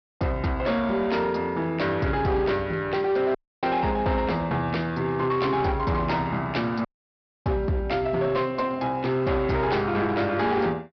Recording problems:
treble cut off; nothing above 5.5 kHz
distorted audio; hard clipping, signal-to-distortion ratio 12 dB
audio cutting out; at 3.5 s and at 7 s for 0.5 s

